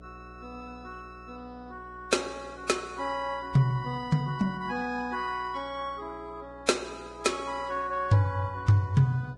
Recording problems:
lossy compression; Vorbis, log-spectral distance 3 dB, nothing above 10.7 kHz
mains hum; 60 Hz, harmonics up to 720 Hz, SNR 24 dB

